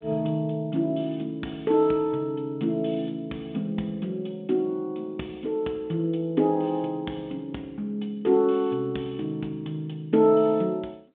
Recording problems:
phone line; 170 Hz to 3.7 kHz, G.726

